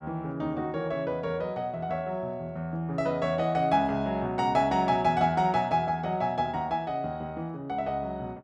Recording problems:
none

